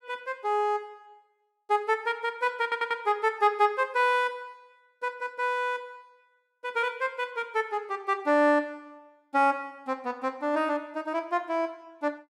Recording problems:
stutter; at 2.5 s

